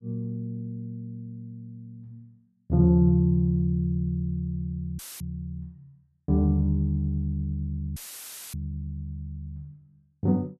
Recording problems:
audio cutting out; at 5 s and at 8 s for 0.5 s; filled with static

